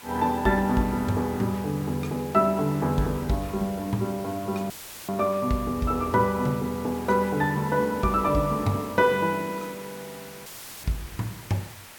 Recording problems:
background hiss; slope -1 dB per octave, SNR 18 dB
dropout; at 4.5 s and at 10 s; filled with static

